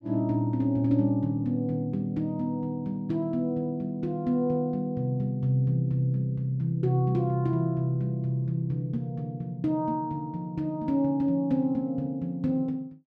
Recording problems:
none

